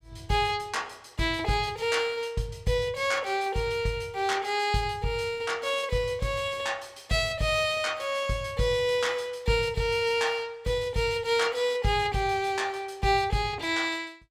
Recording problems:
none

